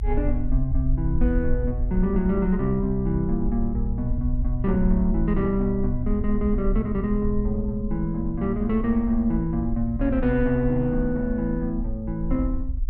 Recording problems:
rumble; below 56 Hz, SNR 6 dB

